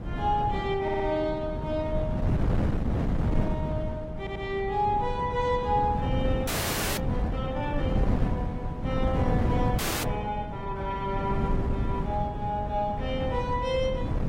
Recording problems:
codec artefacts; AAC, log-spectral distance 2 dB
wind noise; below 220 Hz, SNR 0 dB
stutter; at 1 s and at 4 s
frozen audio; at 6.5 s for 0.5 s and at 10 s

